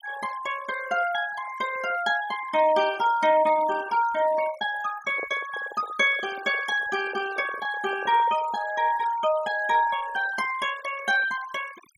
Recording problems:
noise reduction artefacts; signal-to-artefact ratio 15 dB
handling noise; from 5 to 8.5 s; peak -8 dB vs average level

